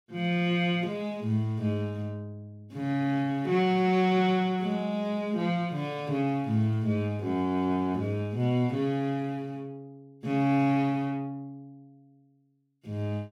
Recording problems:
none

